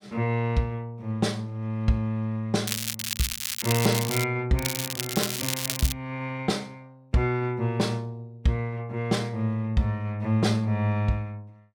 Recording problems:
crackle; from 2.5 to 4 s and from 4.5 to 6 s; loose cable, SNR 2 dB

